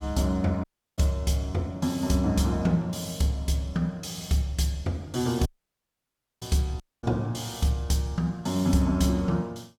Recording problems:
dropout; at 0.5 s, at 5.5 s for 1 s and at 7 s

